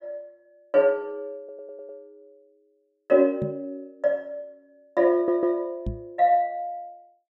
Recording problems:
audio stuttering; at 1.5 s and at 5 s
knock on the microphone; at 3.5 s and at 6 s; peak -2 dB vs average level

